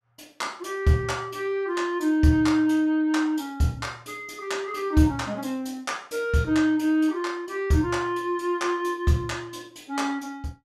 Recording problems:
none

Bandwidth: 14 kHz